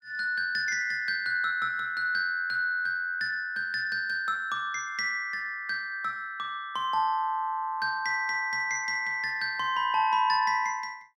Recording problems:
none

